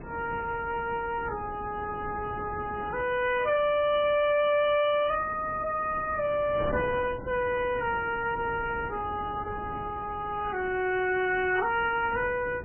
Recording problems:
codec artefacts; AAC, then MP3, log-spectral distance 3 dB, nothing above 2.4 kHz
distortion; soft clipping, signal-to-distortion ratio 11 dB
wind noise; below 550 Hz, SNR 14 dB

